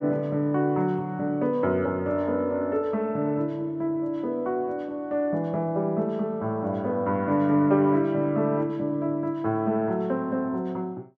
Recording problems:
none

